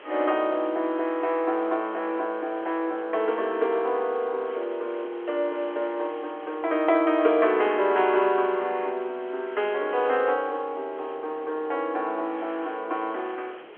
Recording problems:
telephone audio; 320 Hz to 3.3 kHz, G.711
hiss; SNR 23 dB
wind noise; below 720 Hz, SNR 21 dB

